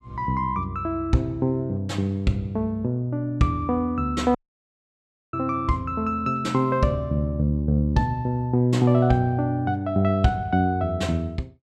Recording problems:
audio cutting out; at 4.5 s for 1 s

